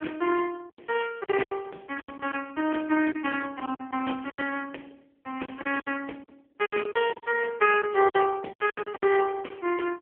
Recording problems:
phone line; 280 Hz to 3.1 kHz, AMR-NB
lost packets; 11% of the sound replaced, filled with silence

